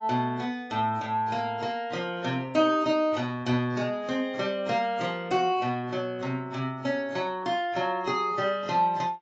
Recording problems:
lossy compression; AAC, log-spectral distance 2 dB

